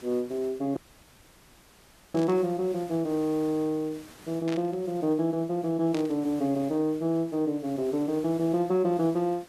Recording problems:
hiss; slope -3 dB per octave, SNR 23 dB
dropout; at 1 s for 1.5 s
burst of static; at 2 s, at 4.5 s and at 6 s; peak -8 dB vs average level

